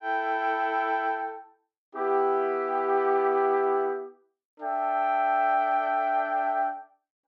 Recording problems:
none

